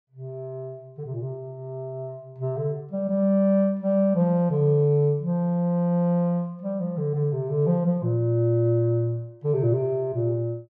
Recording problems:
none

